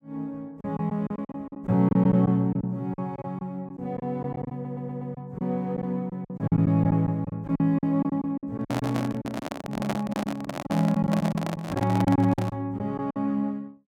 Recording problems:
lost packets; 12% of the sound replaced, filled with silence
audio stuttering; at 4.5 s
microphone handling noise; from 8.5 to 13 s; peak +2 dB vs average level

